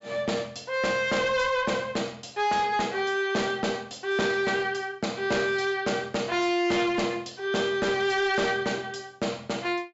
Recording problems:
treble cut off; nothing above 8 kHz
distorted audio; hard clipping, signal-to-distortion ratio 10 dB

